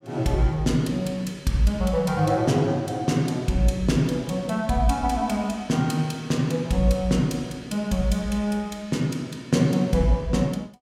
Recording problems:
none

